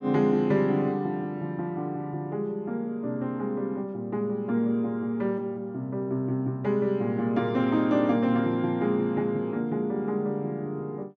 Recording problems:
none

